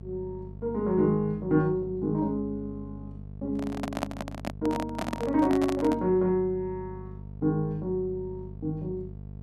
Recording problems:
hum; 50 Hz, harmonics up to 650 Hz, SNR 13 dB
handling noise; from 3.5 to 6 s; peak +2 dB vs average level

